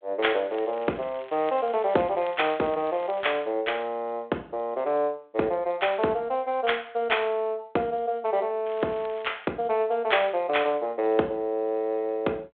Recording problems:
phone line; 280 Hz to 3.5 kHz, G.726
crackling; until 3.5 s and at 8.5 s; loose cable, SNR 22 dB

